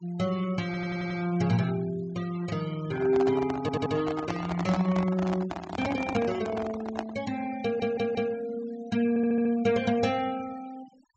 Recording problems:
treble missing; nothing above 8 kHz
noise reduction artefacts; signal-to-artefact ratio 20 dB
stutter; 4 times, first at 0.5 s
handling noise; from 3 to 7 s; peak 0 dB vs average level

